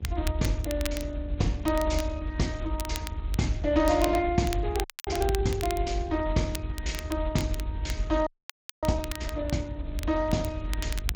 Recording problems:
codec artefacts; Speex, log-spectral distance 2 dB
electrical hum; 50 Hz, harmonics up to 850 Hz, SNR 20 dB
low-frequency rumble; below 80 Hz, SNR 4 dB
crackling; vinyl, SNR 12 dB
frozen audio; at 5 s and at 8.5 s for 0.5 s

